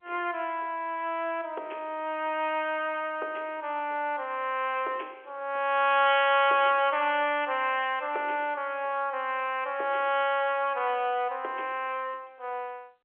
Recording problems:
phone line; 340 Hz to 3.3 kHz, G.711

